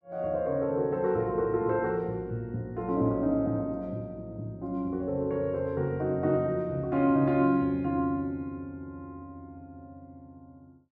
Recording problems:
none

